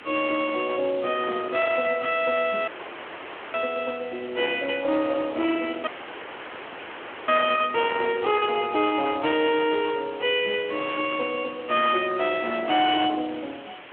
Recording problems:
phone line; 260 Hz to 3.3 kHz, Speex
distorted audio; hard clipping, signal-to-distortion ratio 14 dB
background hiss; SNR 18 dB
wind noise; below 1.9 kHz, SNR 17 dB
dropout; at 2.5 s for 1 s and at 6 s for 1.5 s

